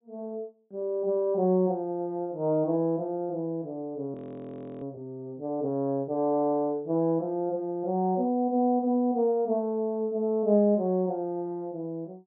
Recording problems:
low-pass filter; nothing above 4 kHz
audio freezing; at 4 s for 0.5 s

